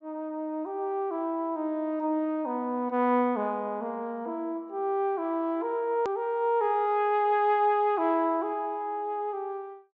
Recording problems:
treble missing; nothing above 8 kHz
edit click; at 6 s

